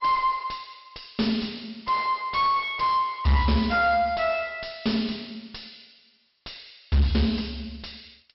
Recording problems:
treble missing; nothing above 5.5 kHz
lossy compression; G.722, log-spectral distance 4 dB
distortion; soft clipping, signal-to-distortion ratio 7 dB

